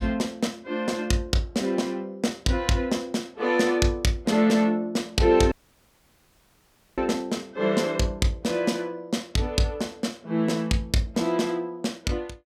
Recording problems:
audio cutting out; at 5.5 s for 1.5 s

